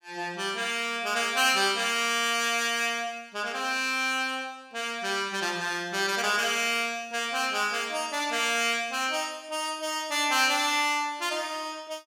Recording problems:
none

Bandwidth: 17 kHz